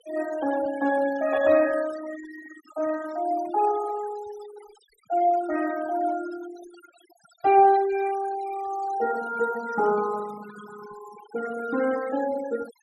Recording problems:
denoising artefacts; signal-to-artefact ratio 16 dB

